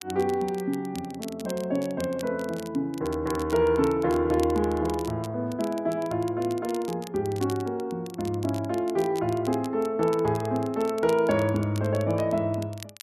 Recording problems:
crackle; vinyl, SNR 19 dB

